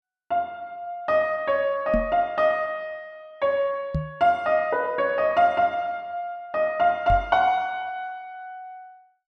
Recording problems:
microphone bump; at 2 s, at 4 s and at 7 s; peak +1 dB vs average level

